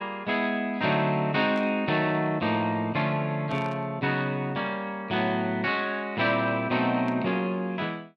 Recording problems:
burst of static; at 1.5 s, at 3.5 s and at 7 s; peak -13 dB vs average level

